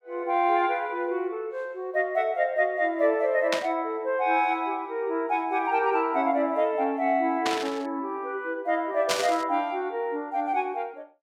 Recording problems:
static burst; at 3.5 s, at 7.5 s and at 9 s; peak +4 dB vs average level

